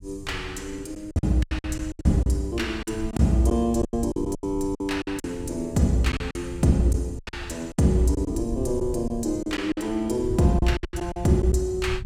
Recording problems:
rumble; below 110 Hz, SNR 12 dB
lost packets; 13% of the sound replaced, filled with silence

